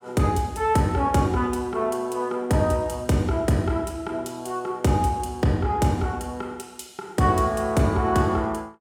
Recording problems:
none

